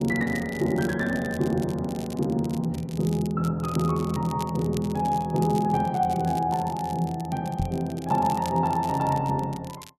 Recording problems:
crackling; vinyl, SNR 19 dB
microphone bump; at 7.5 s; peak +1 dB vs average level

